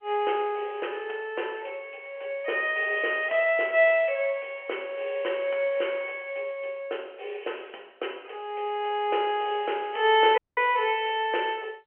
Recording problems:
phone line; 340 Hz to 3.2 kHz, G.711
dropout; at 10 s

